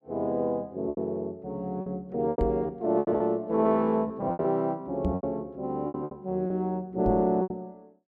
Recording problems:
packet loss; 11% of the sound replaced, filled with repeated pitch periods
knock on the microphone; at 2.5 s, at 5 s and at 7 s; peak +3 dB vs average level

